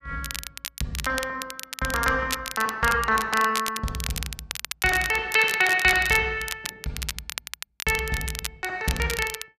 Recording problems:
crackle; vinyl, SNR 9 dB

